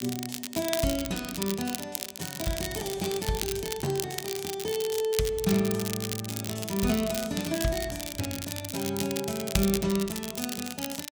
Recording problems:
crackle; vinyl, SNR 4 dB

